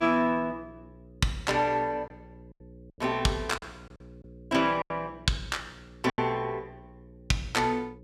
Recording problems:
electrical hum; 60 Hz, harmonics up to 540 Hz, SNR 22 dB
packet loss; 4% of the sound replaced, filled with silence

